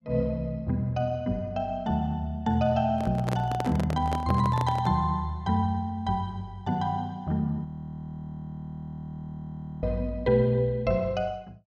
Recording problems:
microphone handling noise; from 3 to 5 s; peak -1 dB vs average level
frozen audio; at 7.5 s for 2 s

